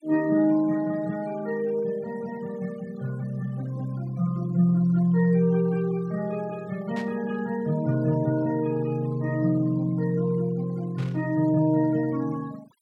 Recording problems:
denoising artefacts; signal-to-artefact ratio 23 dB
burst of static; at 7 s and at 11 s; peak -12 dB vs average level

